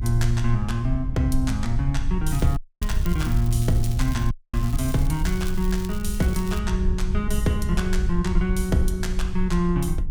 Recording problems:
electrical hum; 50 Hz, harmonics up to 1 kHz, SNR 27 dB
rumble; below 76 Hz, strongest tone 22 Hz, SNR 12 dB
wind on the microphone; below 60 Hz, SNR 3 dB
crackle; from 2.5 to 4.5 s and from 4.5 to 6.5 s; loose cable, SNR 16 dB
audio cutting out; at 2.5 s and at 4.5 s

